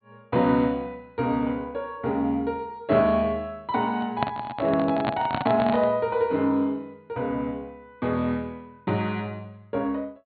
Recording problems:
low-pass filter; nothing above 4.5 kHz
microphone handling noise; from 4 to 6 s; peak +3 dB vs average level

